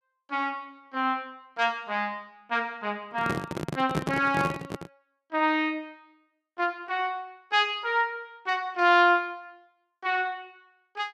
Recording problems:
handling noise; from 3 to 5 s; peak +3 dB vs average level

